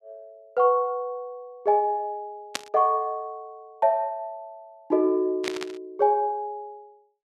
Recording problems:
static burst; at 2.5 s and at 5.5 s; peak +1 dB vs average level

